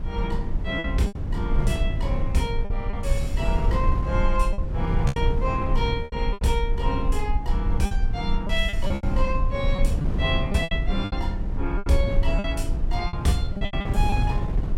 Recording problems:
rumble; below 48 Hz, strongest tone 24 Hz, SNR 2 dB
wind noise; below 140 Hz, SNR 1 dB
packet loss; 9% of the sound replaced, filled with repeated pitch periods

